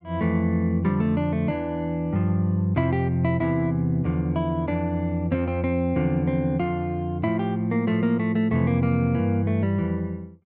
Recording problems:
none

